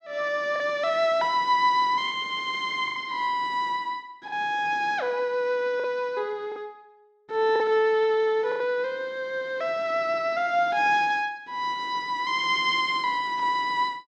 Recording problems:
lost packets; 3% of the sound replaced, filled with the last packet

